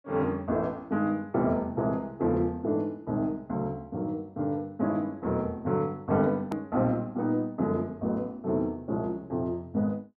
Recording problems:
edit click; at 6.5 s

